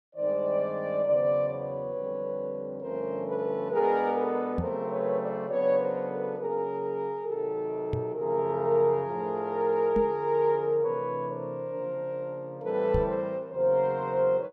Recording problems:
knock on the microphone; 4 times, first at 4.5 s; peak +1 dB vs average level

